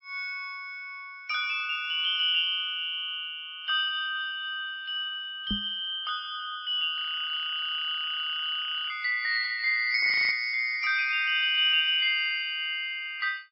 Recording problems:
lossy compression; MP3, log-spectral distance 3 dB, nothing above 4.5 kHz
microphone thump; at 5.5 s; peak -2 dB vs average level
frozen audio; at 7 s for 2 s and at 10 s

